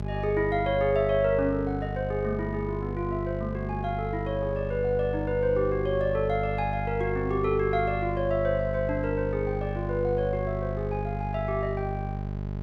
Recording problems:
hum; 50 Hz, harmonics up to 850 Hz, SNR 5 dB

